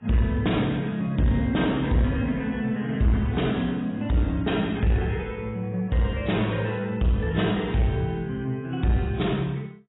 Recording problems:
lossy codec; AAC, log-spectral distance 3 dB, nothing above 3.8 kHz
distortion; soft clipping, signal-to-distortion ratio 11 dB

